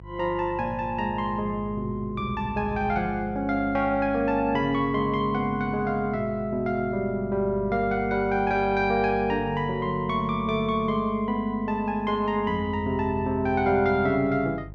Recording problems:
electrical hum; 50 Hz, harmonics up to 500 Hz, SNR 16 dB

